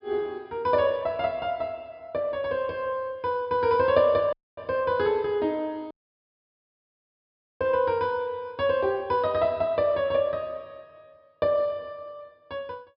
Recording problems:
treble missing; nothing above 5.3 kHz
dropout; at 4.5 s and at 6 s for 1.5 s

